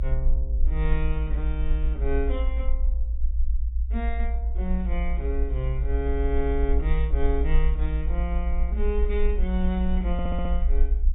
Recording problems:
treble cut off; nothing above 4 kHz
rumble; below 58 Hz, SNR -5 dB
audio stuttering; at 10 s

